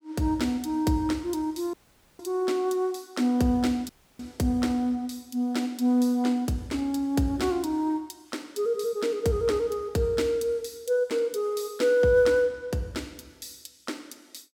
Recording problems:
dropout; at 1.5 s and at 4 s

